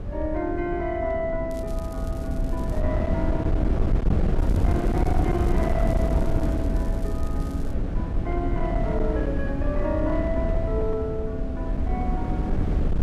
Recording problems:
distorted audio; hard clipping, signal-to-distortion ratio 11 dB
wind on the microphone; below 160 Hz, SNR -3 dB
crackle; from 1.5 to 3 s and from 4.5 to 7.5 s; loose cable, SNR 21 dB

